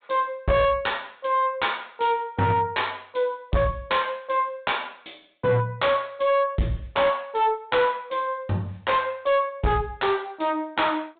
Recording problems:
treble cut off; nothing above 4 kHz
distorted audio; hard clipping, signal-to-distortion ratio 10 dB

